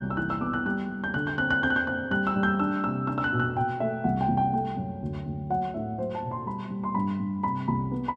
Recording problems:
none

